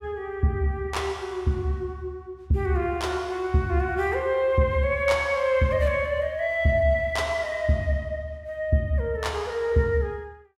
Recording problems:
none

